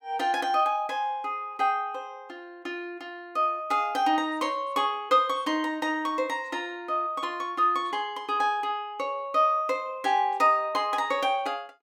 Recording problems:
none

